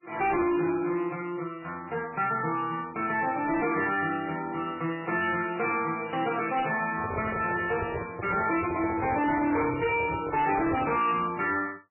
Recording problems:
lossy compression; MP3, log-spectral distance 5 dB, nothing above 2.4 kHz
distorted audio; hard clipping, uneven, signal-to-distortion ratio 10 dB
microphone handling noise; from 7 to 11 s; peak -2 dB vs average level

